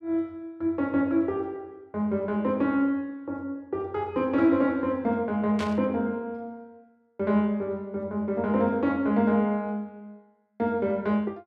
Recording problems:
static burst; at 5.5 s; peak -7 dB vs average level

